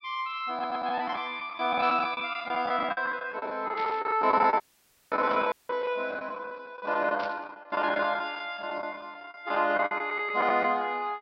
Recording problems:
low-pass filter; nothing above 5.5 kHz
packet loss; 17% of the sound replaced, filled with the last packet
audio stuttering; at 0.5 s
burst of static; 4 times, first at 2 s; peak -9 dB vs average level
dropout; at 4.5 s for 0.5 s and at 5.5 s

